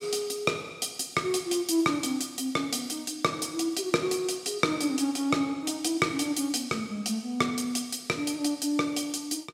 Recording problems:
none

